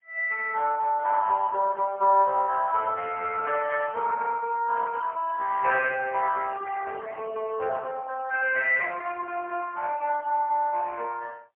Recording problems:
telephone audio; 370 Hz to 2.6 kHz, AMR-NB, then MP3

